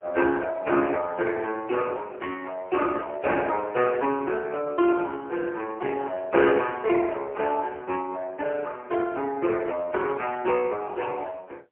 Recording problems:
telephone audio; 300 Hz to 3 kHz, AMR-NB, then MP3

